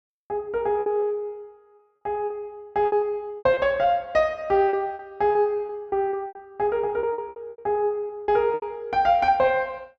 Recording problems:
lost packets; 13% of the sound replaced, filled with repeated pitch periods

